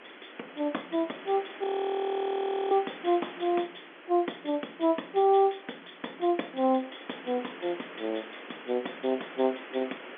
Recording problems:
telephone audio; 220 Hz to 3.4 kHz, G.711
hiss; SNR 15 dB
audio freezing; at 1.5 s for 1 s

